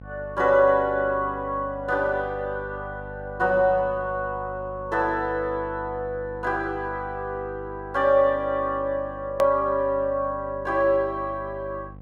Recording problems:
hum; 50 Hz, harmonics up to 800 Hz, SNR 17 dB
click at an edit; at 9.5 s

